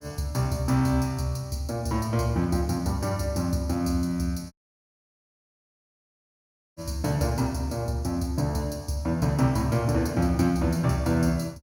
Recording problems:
dropout; at 4.5 s for 2 s

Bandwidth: 17.5 kHz